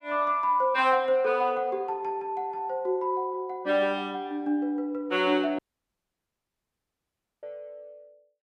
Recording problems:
audio cutting out; at 5.5 s for 2 s

